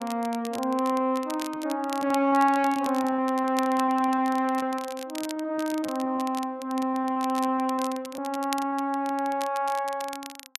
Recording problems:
crackling; vinyl, SNR 16 dB
packet loss; 10% of the sound replaced, filled with repeated pitch periods

